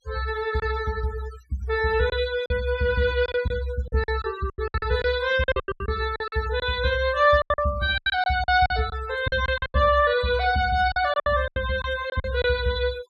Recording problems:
noise reduction artefacts; signal-to-artefact ratio 16 dB
packet loss; 13% of the sound replaced, filled with silence

